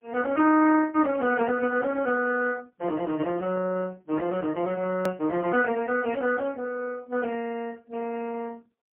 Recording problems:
phone line; 190 Hz to 2.2 kHz, AMR-NB, then MP3
edit click; at 5 s

